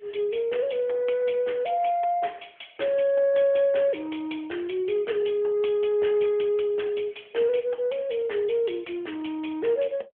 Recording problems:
phone line; 320 Hz to 3.4 kHz, AMR-NB

